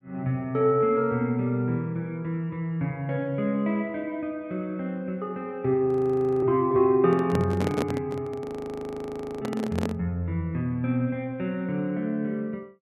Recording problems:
audio freezing; at 6 s for 0.5 s and at 8.5 s for 1 s
handling noise; from 7 to 10 s; peak +3 dB vs average level

